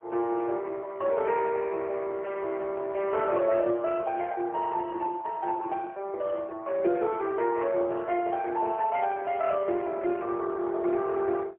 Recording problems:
telephone audio; 300 Hz to 3.1 kHz, AMR-NB, then MP3

